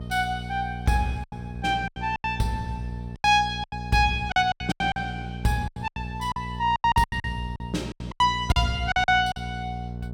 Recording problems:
mains hum; 60 Hz, harmonics up to 660 Hz, SNR 10 dB
lost packets; 15% of the sound replaced, filled with silence

